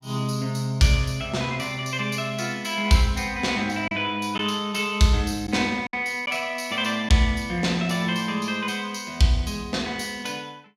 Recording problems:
lost packets; 1.2% of the sound replaced, filled with silence

